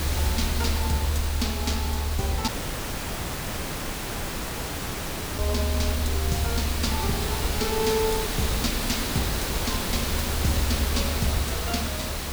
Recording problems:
background hiss; slope -3 dB per octave, SNR -1 dB
rumble; below 76 Hz, strongest tone 74 Hz, SNR 1 dB
crackling; from 1 to 2.5 s; loose cable, SNR 23 dB
audio cutting out; at 2.5 s for 3 s

